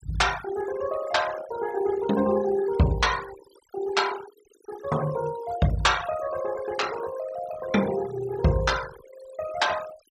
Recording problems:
denoising artefacts; signal-to-artefact ratio 14 dB

